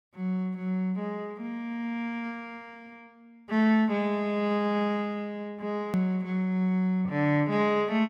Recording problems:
hard cut with a click; at 6 s

